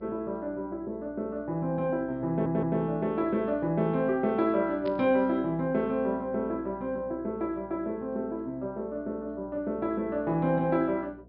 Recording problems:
treble missing; nothing above 5.1 kHz
hum; 60 Hz, harmonics up to 720 Hz, SNR 23 dB
stutter; at 2.5 s
burst of static; at 5 s; peak -13 dB vs average level

